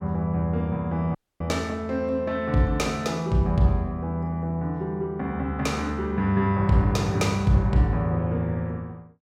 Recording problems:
dropout; at 1 s

